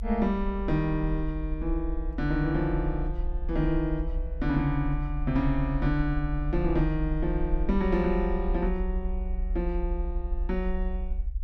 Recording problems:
rumble; below 60 Hz, strongest tone 36 Hz, SNR 4 dB

